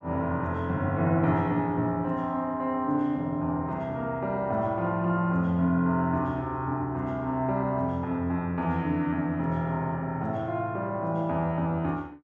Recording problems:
none

